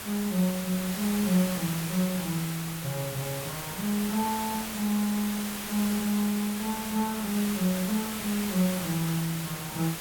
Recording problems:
hiss; slope -2 dB per octave, SNR 5 dB

